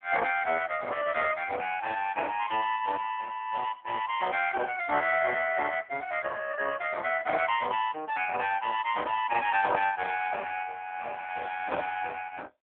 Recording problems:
phone line; 260 Hz to 3.3 kHz, AMR-NB

